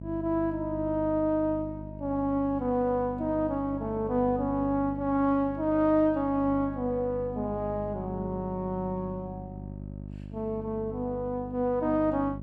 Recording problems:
hum; 50 Hz, harmonics up to 650 Hz, SNR 12 dB

